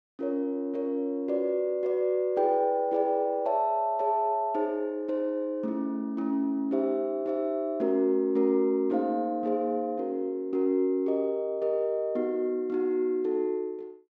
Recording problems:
none

